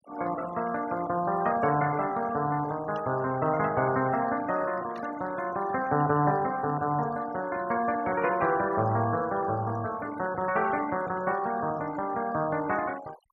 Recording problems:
denoising artefacts; signal-to-artefact ratio 17 dB
static burst; at 3 s and at 5 s; peak -15 dB vs average level

